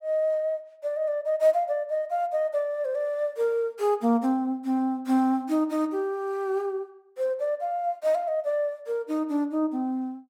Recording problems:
none

